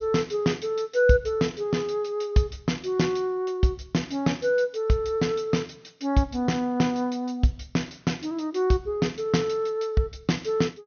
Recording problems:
treble cut off; nothing above 6.5 kHz

